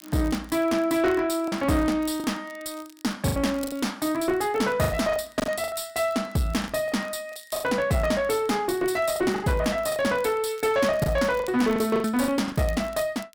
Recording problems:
distortion; soft clipping, signal-to-distortion ratio 10 dB
crackle; vinyl, SNR 25 dB
lost packets; 9% of the sound replaced, filled with the last packet

